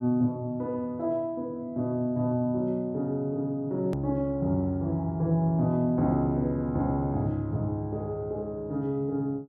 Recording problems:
treble missing; nothing above 7.9 kHz
hard cut with a click; at 4 s

